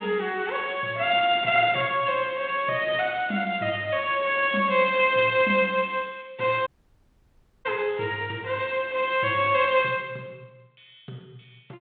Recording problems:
telephone audio; 150 Hz to 3.6 kHz, G.726
audio cutting out; at 6.5 s for 1 s

